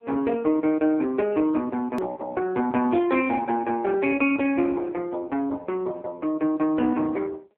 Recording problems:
telephone audio; 220 Hz to 3.4 kHz, AMR-NB
hard cut with a click; at 2 s

